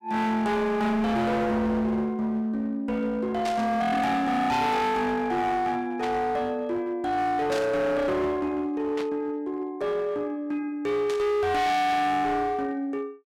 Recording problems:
distorted audio; hard clipping, uneven, signal-to-distortion ratio 7 dB
burst of static; 5 times, first at 3.5 s; peak -6 dB vs average level

